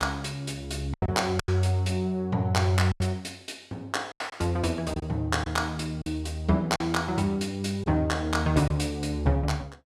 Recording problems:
packet loss; 6% of the sound replaced, filled with silence

